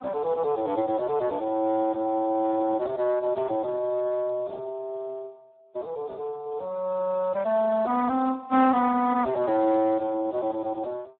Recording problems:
phone line; 220 Hz to 3.7 kHz, Speex

